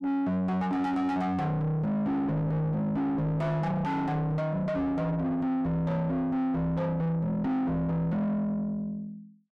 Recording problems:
distortion; soft clipping, signal-to-distortion ratio 6 dB

